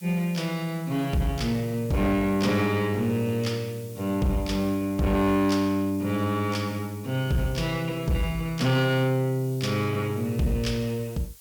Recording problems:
distortion; soft clipping, signal-to-distortion ratio 12 dB
hiss; slope +3 dB per octave, SNR 21 dB

